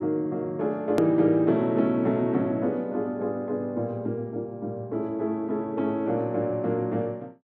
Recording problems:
click at an edit; at 1 s

